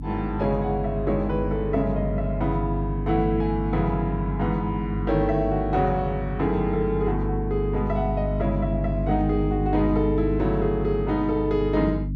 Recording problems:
electrical hum; 50 Hz, harmonics up to 300 Hz, SNR 4 dB

